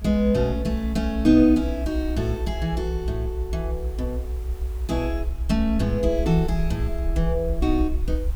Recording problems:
hiss; SNR 26 dB
rumble; below 64 Hz, strongest tone 60 Hz, SNR 5 dB

